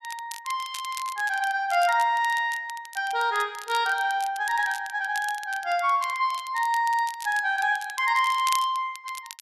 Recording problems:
crackle; vinyl, SNR 15 dB

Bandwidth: 12.5 kHz